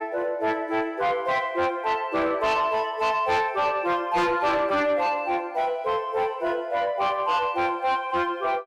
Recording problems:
distortion; soft clipping, signal-to-distortion ratio 11 dB

